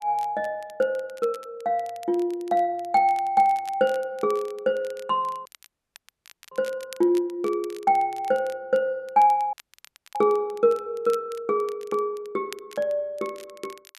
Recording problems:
crackling; vinyl, SNR 24 dB
audio cutting out; at 5.5 s for 1 s and at 9.5 s for 0.5 s

